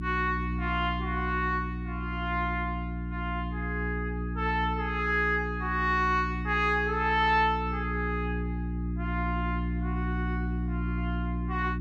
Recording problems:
hum; 60 Hz, harmonics up to 360 Hz, SNR 3 dB

